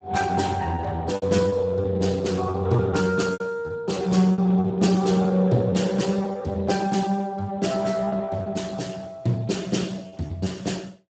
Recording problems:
codec artefacts; Speex, log-spectral distance 4 dB, nothing above 7.8 kHz
packet loss; 9% of the sound replaced, filled with repeated pitch periods

